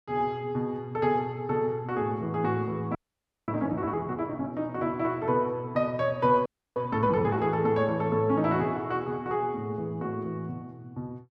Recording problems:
frozen audio; at 3 s for 0.5 s and at 6.5 s

